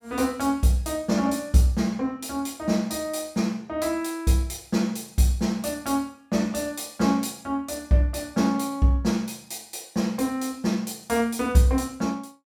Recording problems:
none

